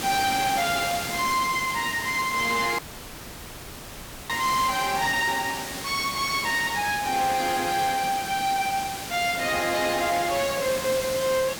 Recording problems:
distortion; soft clipping, signal-to-distortion ratio 10 dB
background hiss; slope -2 dB per octave, SNR 7 dB
dropout; at 3 s for 1.5 s

